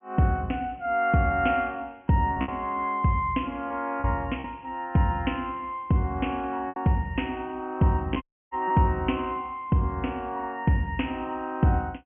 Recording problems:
low-pass filter; nothing above 3 kHz
lost packets; 3% of the sound replaced, filled with repeated pitch periods
audio cutting out; at 8 s

